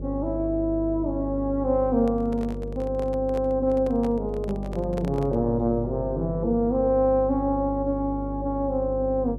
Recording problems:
hum; 50 Hz, harmonics up to 600 Hz, SNR 9 dB
handling noise; from 2 to 5.5 s; peak -7 dB vs average level

